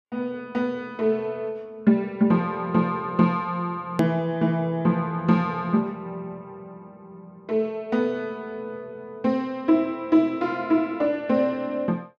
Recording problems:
hard cut with a click; at 4 s

